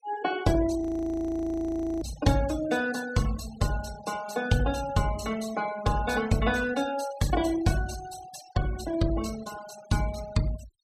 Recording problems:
noise reduction artefacts; signal-to-artefact ratio 15 dB
frozen audio; at 1 s for 1 s

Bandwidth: 14.5 kHz